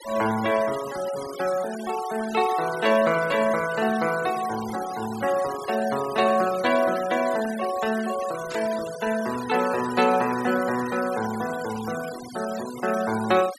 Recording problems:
noise reduction artefacts; signal-to-artefact ratio 14 dB
static burst; at 8.5 s; peak -13 dB vs average level

